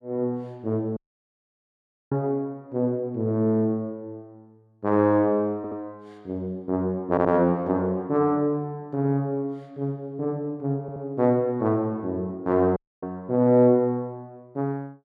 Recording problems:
audio cutting out; at 1 s for 1 s and at 13 s
stutter; at 5.5 s, at 7 s and at 11 s

